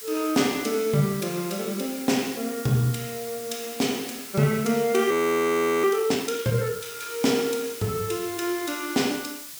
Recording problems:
hiss; slope +2 dB per octave, SNR 12 dB
audio freezing; at 5 s for 0.5 s

